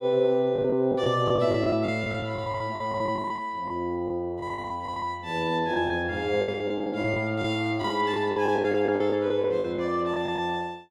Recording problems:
lost packets; 14% of the sound replaced, filled with the last packet

